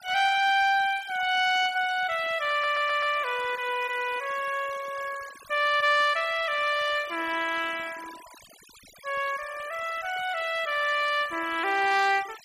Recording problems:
denoising artefacts; signal-to-artefact ratio 17 dB
stutter; at 2.5 s

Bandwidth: 15 kHz